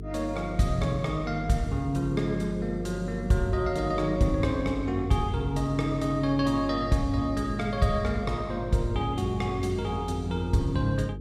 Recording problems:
electrical hum; 50 Hz, harmonics up to 450 Hz, SNR 10 dB

